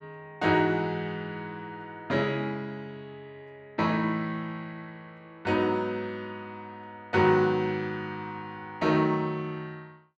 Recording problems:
none

